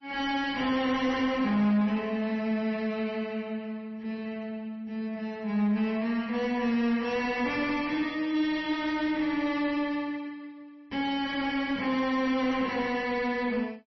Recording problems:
lossy compression; MP3, log-spectral distance 2 dB, nothing above 5.8 kHz
distortion; soft clipping, signal-to-distortion ratio 11 dB

